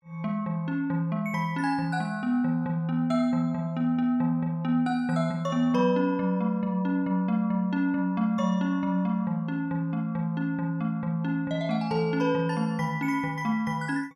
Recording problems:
none

